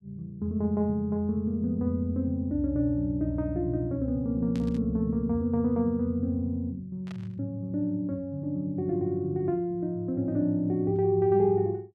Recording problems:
burst of static; at 4.5 s and at 7 s; peak -14 dB vs average level

